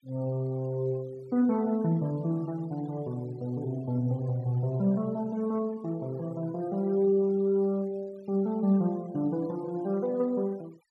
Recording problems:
denoising artefacts; signal-to-artefact ratio 26 dB

